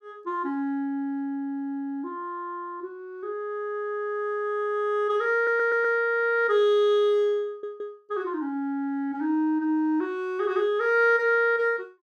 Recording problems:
stutter; at 5.5 s and at 7.5 s

